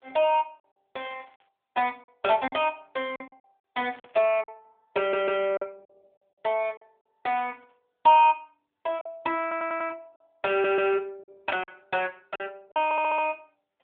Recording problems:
phone line; 240 Hz to 3.4 kHz, AMR-NB
lost packets; 7% of the sound replaced, filled with silence
static burst; 4 times, first at 1 s; peak -19 dB vs average level
audio stuttering; 4 times, first at 5 s

